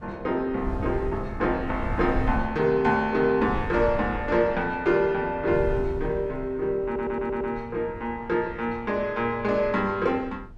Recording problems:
wind noise; below 120 Hz, SNR 12 dB
audio stuttering; at 7 s

